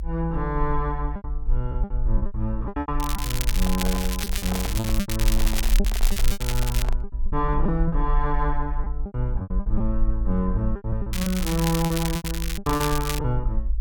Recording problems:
low-frequency rumble; below 52 Hz, SNR 1 dB
packet loss; 12% of the sound replaced, filled with repeated pitch periods
crackling; from 3 to 7 s and from 11 to 13 s; loose cable, SNR 3 dB
handling noise; from 3.5 to 7 s; peak -2 dB vs average level

